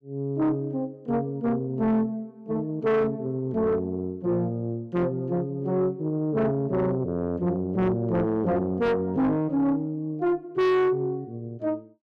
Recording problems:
distorted audio; soft clipping, signal-to-distortion ratio 7 dB

